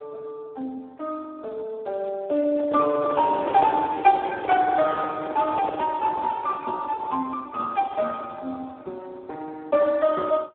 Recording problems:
telephone audio; 240 Hz to 2.2 kHz, Speex
handling noise; from 2.5 to 6 s; peak -2 dB vs average level

